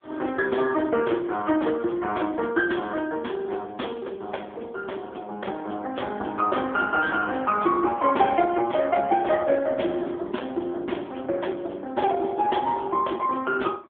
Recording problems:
telephone audio; 260 Hz to 3.4 kHz, AMR-NB

